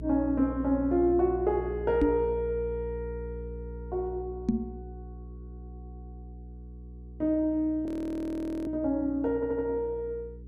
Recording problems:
electrical hum; 60 Hz, harmonics up to 480 Hz, SNR 13 dB
knock on the microphone; at 2 s and at 4.5 s; peak +7 dB vs average level
audio freezing; at 8 s for 1 s
audio stuttering; at 9.5 s

